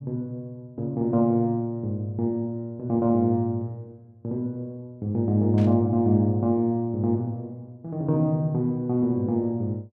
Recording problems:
static burst; at 5.5 s; peak -15 dB vs average level

